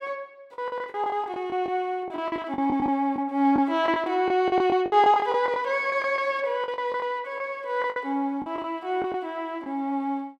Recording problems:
packet loss; 13% of the sound replaced, filled with the last packet

